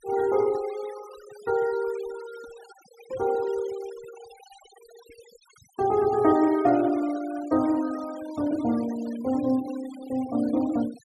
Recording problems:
denoising artefacts; signal-to-artefact ratio 20 dB

